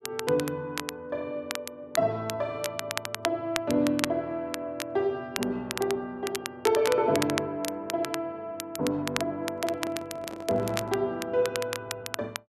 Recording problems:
crackle; vinyl, SNR 7 dB
microphone handling noise; from 9.5 to 11 s; peak -6 dB vs average level

